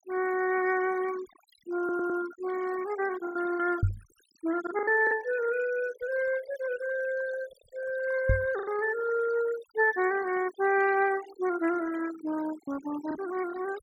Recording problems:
denoising artefacts; signal-to-artefact ratio 16 dB
packet loss; 4% of the sound replaced, filled with the last packet
stutter; at 2 s
knock on the microphone; at 4 s and at 8.5 s; peak +7 dB vs average level

